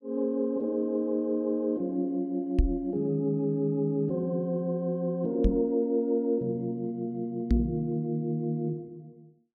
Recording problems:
microphone bump; at 2.5 s, at 5.5 s and at 7.5 s; peak +8 dB vs average level

